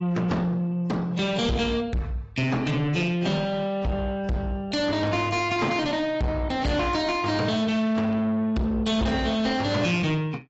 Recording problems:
lossy compression; AAC, log-spectral distance 2 dB, nothing above 7.6 kHz
distortion; soft clipping, signal-to-distortion ratio 8 dB

